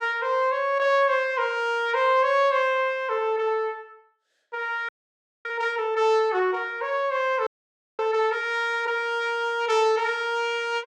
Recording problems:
audio freezing; at 5 s for 0.5 s and at 7.5 s for 0.5 s

